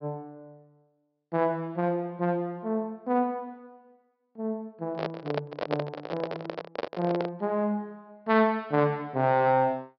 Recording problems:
treble cut off; nothing above 5.5 kHz
handling noise; from 5 to 7.5 s; peak +4 dB vs average level

